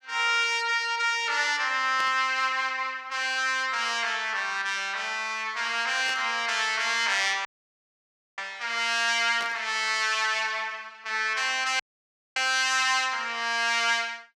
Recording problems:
burst of static; at 2 s, at 6 s and at 9.5 s; peak -7 dB vs average level
audio cutting out; at 7.5 s for 1 s and at 12 s for 0.5 s

